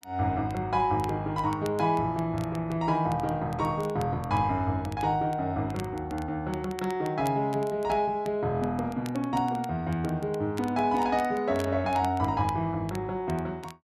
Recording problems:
crackle; vinyl, SNR 22 dB

